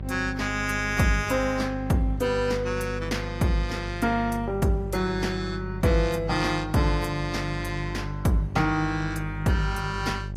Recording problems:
lossy codec; AAC, log-spectral distance 2 dB
hum; 50 Hz, harmonics up to 600 Hz, SNR 8 dB

